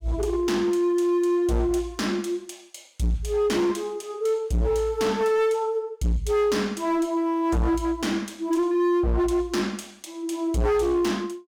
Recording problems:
distorted audio; hard clipping, signal-to-distortion ratio 7 dB

